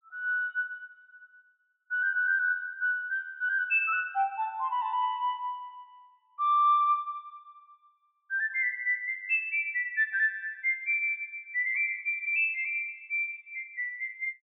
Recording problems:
treble missing; nothing above 4 kHz

